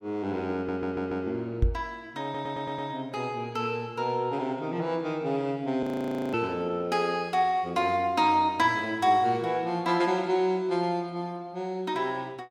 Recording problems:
stutter; at 0.5 s and at 2 s
knock on the microphone; at 1.5 s; peak +6 dB vs average level
frozen audio; at 6 s for 0.5 s

